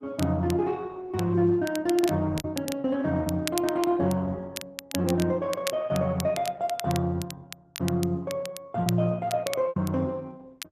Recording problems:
lossy codec; Opus, log-spectral distance 2 dB
crackling; vinyl, SNR 12 dB
lost packets; 4% of the sound replaced, filled with repeated pitch periods

